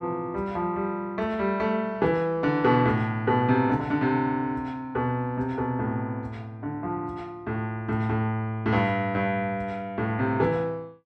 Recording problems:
none

